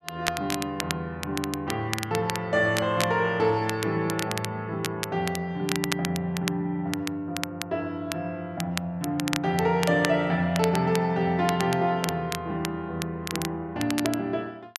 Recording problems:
crackle; vinyl, SNR 8 dB

